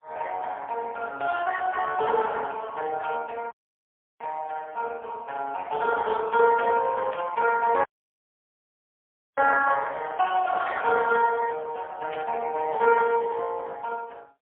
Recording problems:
telephone audio; 300 Hz to 2.6 kHz, AMR-NB, then MP3
burst of static; 4 times, first at 3 s; peak -6 dB vs average level
audio cutting out; at 3.5 s for 0.5 s and at 8 s for 1.5 s

